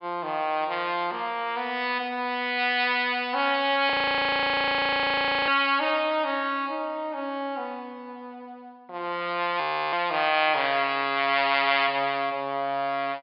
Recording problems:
treble missing; nothing above 5.1 kHz
audio freezing; at 4 s for 1.5 s and at 9.5 s

